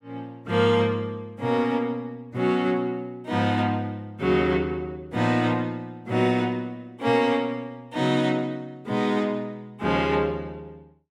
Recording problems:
none

